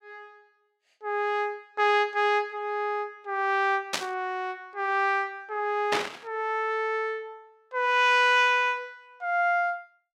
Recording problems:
static burst; at 4 s and at 6 s; peak +3 dB vs average level

